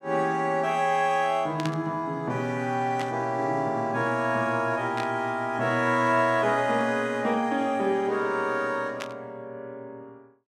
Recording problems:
burst of static; 4 times, first at 1.5 s; peak -5 dB vs average level

